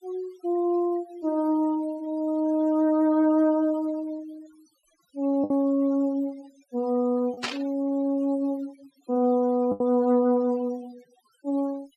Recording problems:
noise reduction artefacts; signal-to-artefact ratio 25 dB
lost packets; 1.7% of the sound replaced, filled with the last packet
burst of static; at 7.5 s; peak +1 dB vs average level

